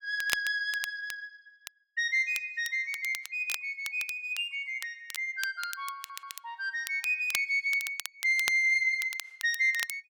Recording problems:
crackle; vinyl, SNR 12 dB
audio stuttering; at 6 s

